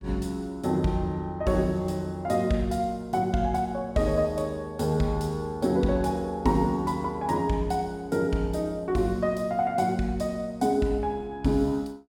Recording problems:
none

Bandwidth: 17 kHz